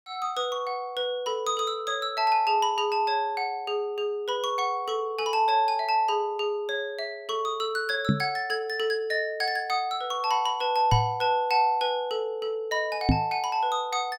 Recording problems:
microphone bump; at 8 s, at 11 s and at 13 s; peak +8 dB vs average level

